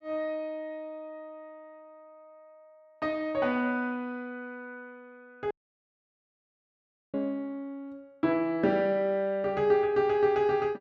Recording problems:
dropout; at 5.5 s for 1.5 s

